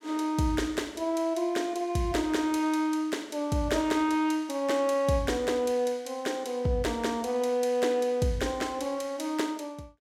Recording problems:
none

